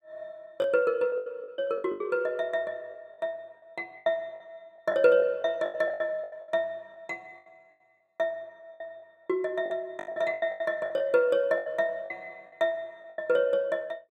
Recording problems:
lost packets; 13% of the sound replaced, filled with the last packet

